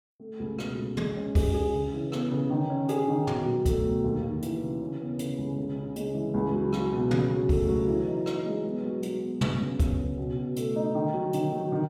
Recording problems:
none

